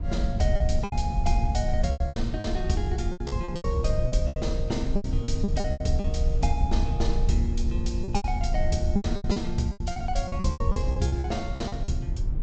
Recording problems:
treble cut off; nothing above 8 kHz
low-frequency rumble; below 76 Hz, SNR -1 dB
packet loss; 15% of the sound replaced, filled with repeated pitch periods

